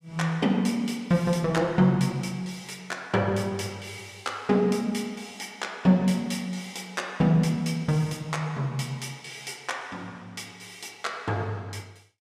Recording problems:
none

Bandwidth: 15 kHz